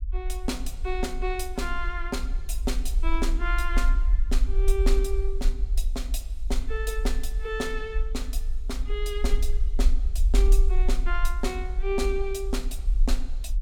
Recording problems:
rumble; below 44 Hz, SNR -4 dB

